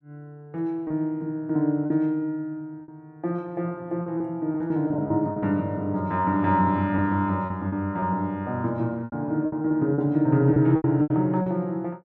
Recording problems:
packet loss; 8% of the sound replaced, filled with repeated pitch periods

